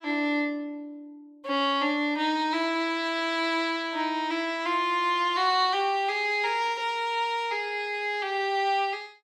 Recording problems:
none

